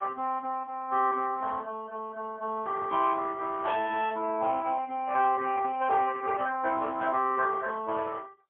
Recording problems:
phone line; 280 Hz to 3.3 kHz, AMR-NB, then MP3

